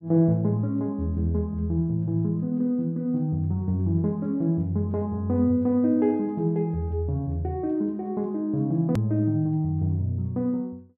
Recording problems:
hard cut with a click; at 9 s

